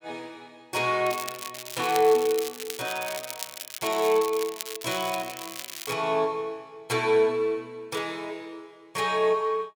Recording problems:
crackling; from 1 to 6 s; loose cable, SNR 10 dB

